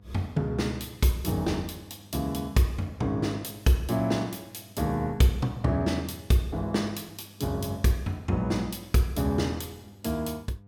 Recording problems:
hum; 50 Hz, harmonics up to 700 Hz, SNR 24 dB

